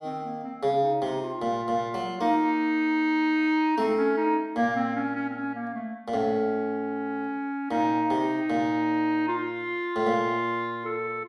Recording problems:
none

